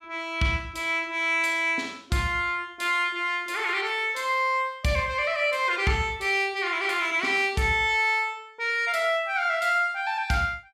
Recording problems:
none

